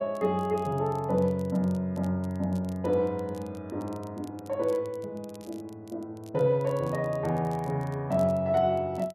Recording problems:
crackle; vinyl, SNR 27 dB

